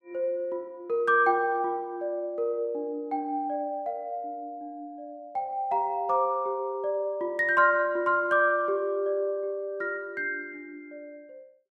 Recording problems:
none

